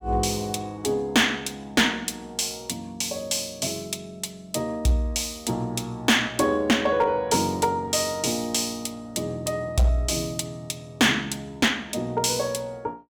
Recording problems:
distorted audio; hard clipping, signal-to-distortion ratio 10 dB

